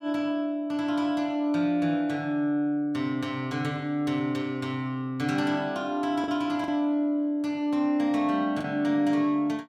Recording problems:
packet loss; 1.2% of the sound replaced, filled with the last packet

